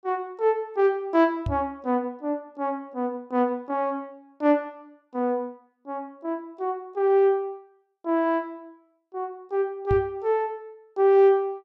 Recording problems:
microphone bump; at 1.5 s and at 10 s; peak 0 dB vs average level

